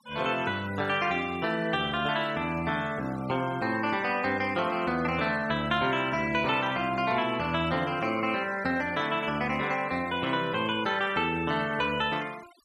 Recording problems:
denoising artefacts; signal-to-artefact ratio 19 dB

